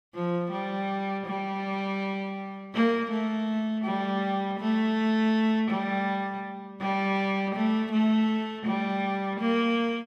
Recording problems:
none

